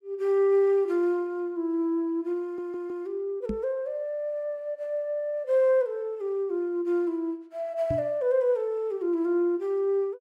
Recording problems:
audio stuttering; at 2.5 s
knock on the microphone; at 3.5 s and at 8 s; peak -1 dB vs average level

